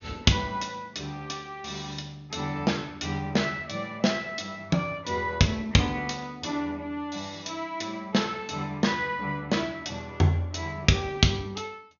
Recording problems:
treble missing; nothing above 6.8 kHz

